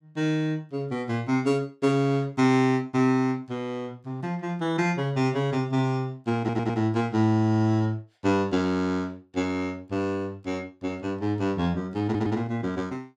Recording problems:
stutter; at 6.5 s and at 12 s

